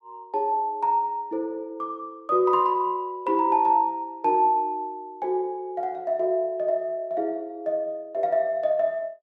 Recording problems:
none

